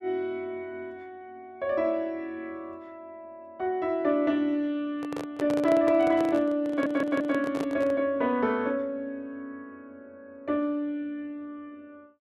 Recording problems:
handling noise; from 5 to 8 s; peak -4 dB vs average level
stutter; at 6.5 s

